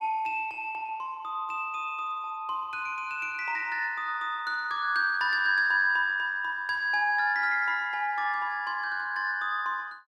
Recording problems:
none

